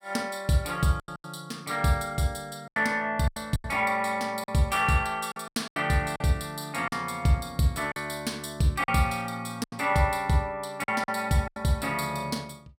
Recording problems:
packet loss; 8% of the sound replaced, filled with silence

